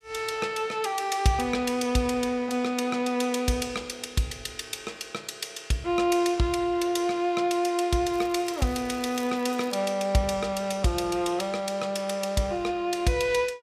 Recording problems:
crackle; from 8 to 9.5 s; loose cable, SNR 23 dB

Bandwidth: 15 kHz